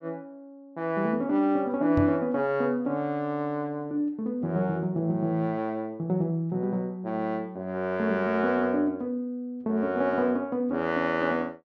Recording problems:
knock on the microphone; at 2 s; peak +2 dB vs average level

